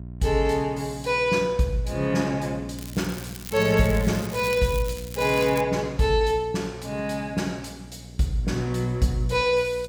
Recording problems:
mains hum; 60 Hz, harmonics up to 420 Hz, SNR 16 dB
crackle; from 3 to 5.5 s; loose cable, SNR 15 dB

